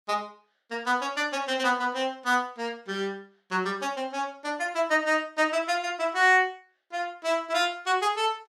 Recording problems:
none

